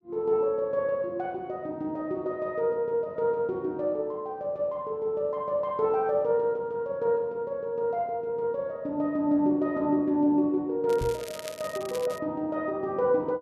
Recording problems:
crackling; from 11 to 12 s; loose cable, SNR 15 dB
microphone thump; at 11 s; peak -2 dB vs average level

